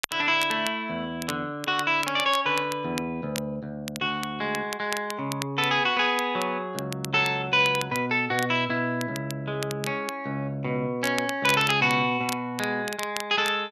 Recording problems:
crackle; vinyl, SNR 12 dB

